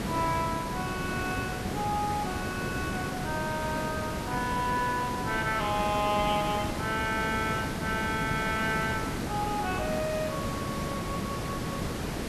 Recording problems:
background hiss; slope -5 dB per octave, SNR 2 dB

